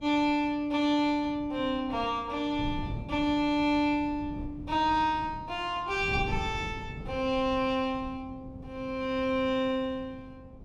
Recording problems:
wind on the microphone; below 190 Hz, SNR 14 dB

